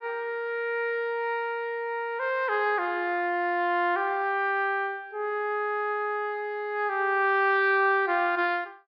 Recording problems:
treble cut off; nothing above 5.5 kHz

